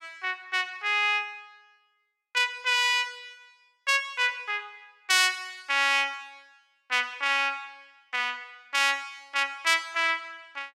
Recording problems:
none

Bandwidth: 16.5 kHz